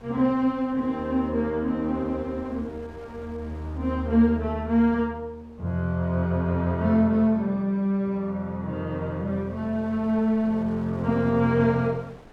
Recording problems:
wind on the microphone; below 870 Hz, SNR 26 dB

